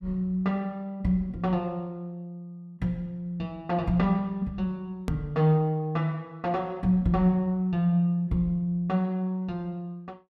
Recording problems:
edit click; at 5 s

